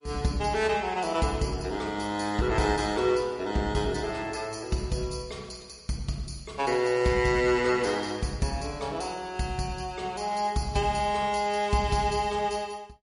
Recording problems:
codec artefacts; MP3, log-spectral distance 4 dB, nothing above 10.4 kHz

